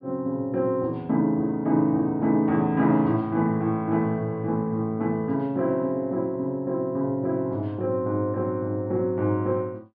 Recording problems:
low-pass filter; nothing above 5.5 kHz

